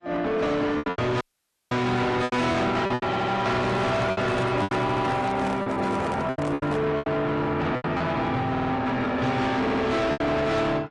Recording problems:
codec artefacts; MP3, then AAC, log-spectral distance 3 dB, nothing above 10.1 kHz
distorted audio; soft clipping, signal-to-distortion ratio 7 dB
packet loss; 10% of the sound replaced, filled with repeated pitch periods
dropout; at 1 s for 0.5 s
stutter; 4 times, first at 3 s
handling noise; from 3.5 to 7 s; peak -2 dB vs average level

